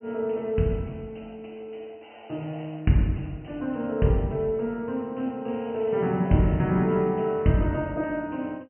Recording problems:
low-pass filter; nothing above 3 kHz

